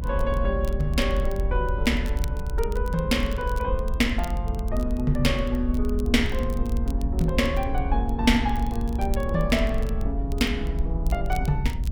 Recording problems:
low-frequency rumble; below 64 Hz, SNR 2 dB
crackle; vinyl, SNR 21 dB

